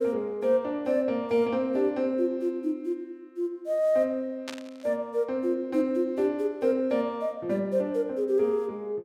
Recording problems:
burst of static; at 4.5 s; peak -5 dB vs average level

